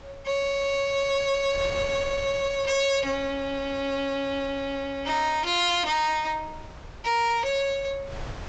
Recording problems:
low-pass filter; nothing above 8 kHz
distortion; hard clipping, uneven, signal-to-distortion ratio 7 dB
wind noise; below 1 kHz, SNR 17 dB

